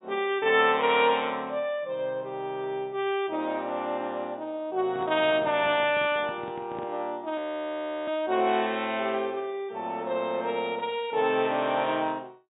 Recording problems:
treble cut off; nothing above 4 kHz
microphone handling noise; from 5 to 7 s; peak -10 dB vs average level
frozen audio; at 7.5 s for 0.5 s

